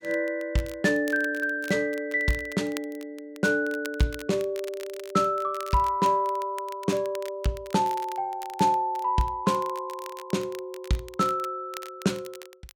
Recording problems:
crackle; vinyl, SNR 19 dB

